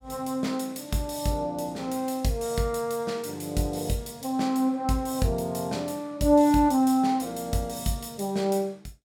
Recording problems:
none

